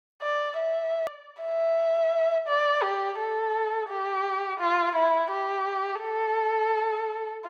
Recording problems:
click at an edit; at 1 s

